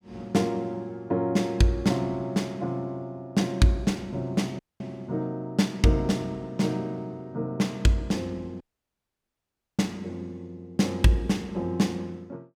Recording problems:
dropout; at 4.5 s and at 8.5 s for 1 s

